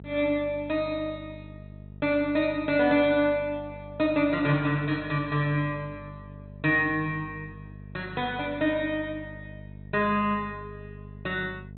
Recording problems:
treble cut off; nothing above 4 kHz
electrical hum; 50 Hz, harmonics up to 650 Hz, SNR 17 dB

